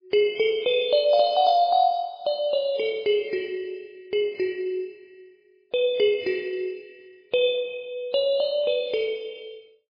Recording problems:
lossy compression; MP3, log-spectral distance 2 dB, nothing above 4.2 kHz

